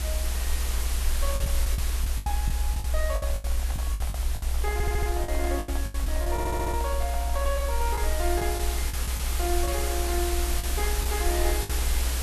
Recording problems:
background hiss; slope -2 dB per octave, SNR 1 dB
rumble; below 62 Hz, SNR -3 dB
lost packets; 10% of the sound replaced, filled with the last packet
microphone handling noise; from 3 to 7.5 s; peak -4 dB vs average level
stutter; at 4.5 s and at 6.5 s

